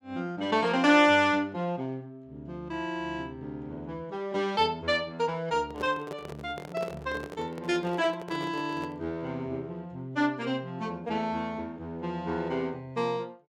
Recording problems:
microphone handling noise; from 5.5 to 9 s; peak -4 dB vs average level

